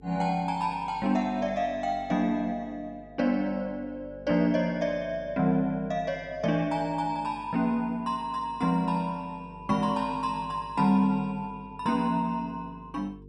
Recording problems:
electrical hum; 50 Hz, harmonics up to 450 Hz, SNR 22 dB

